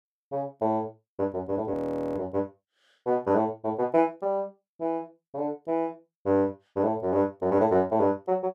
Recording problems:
frozen audio; at 1.5 s

